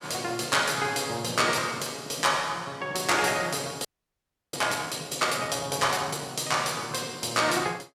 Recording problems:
frozen audio; at 4 s for 0.5 s

